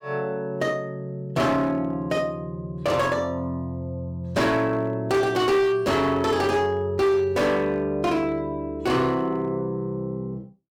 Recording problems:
distorted audio; hard clipping, signal-to-distortion ratio 10 dB

